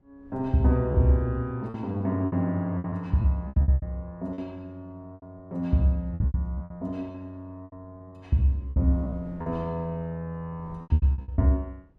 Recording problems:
wind on the microphone; below 250 Hz, SNR 24 dB
lost packets; 13% of the sound replaced, filled with repeated pitch periods

